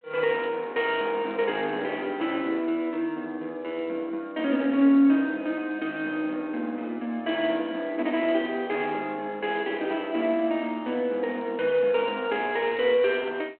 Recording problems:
telephone audio; 220 Hz to 3.3 kHz, G.726

